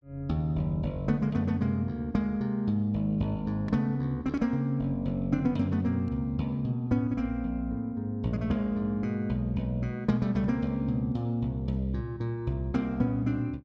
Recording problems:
none

